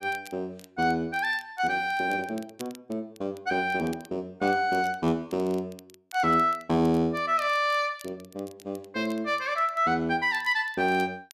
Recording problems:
crackle; vinyl, SNR 25 dB

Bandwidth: 14 kHz